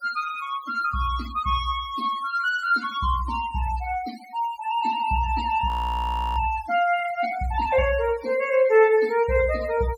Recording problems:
denoising artefacts; signal-to-artefact ratio 17 dB
frozen audio; at 5.5 s for 0.5 s

